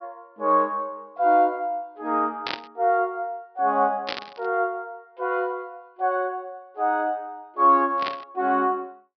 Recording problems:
treble missing; nothing above 5.5 kHz
burst of static; at 2.5 s, at 4 s and at 8 s; peak -1 dB vs average level

